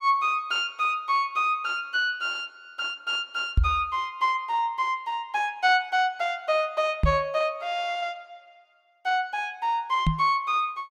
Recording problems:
microphone thump; at 3.5 s, at 7 s and at 10 s; peak +7 dB vs average level

